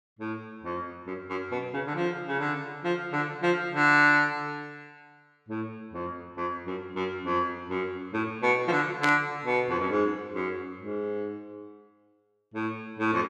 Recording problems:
static burst; at 9 s; peak +1 dB vs average level

